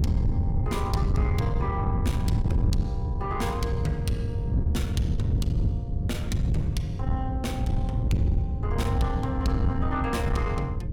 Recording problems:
distorted audio; soft clipping, signal-to-distortion ratio 10 dB
hum; 60 Hz, harmonics up to 540 Hz, SNR 6 dB
wind noise; below 130 Hz, SNR -4 dB

